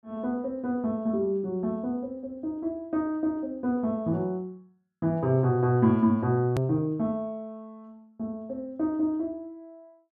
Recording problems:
edit click; at 6.5 s

